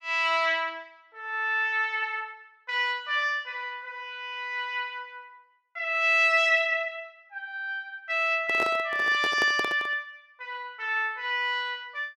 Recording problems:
handling noise; from 8.5 to 10 s; peak -3 dB vs average level

